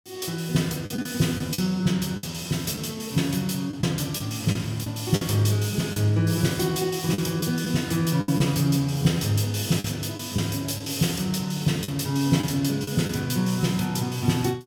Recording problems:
lost packets; 5% of the sound replaced, filled with the last packet

